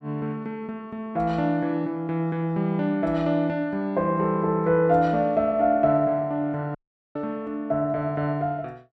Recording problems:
dropout; at 7 s

